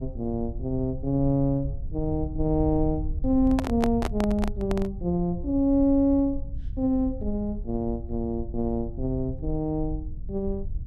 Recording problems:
rumble; below 74 Hz, SNR 9 dB
handling noise; from 3.5 to 5 s; peak +2 dB vs average level

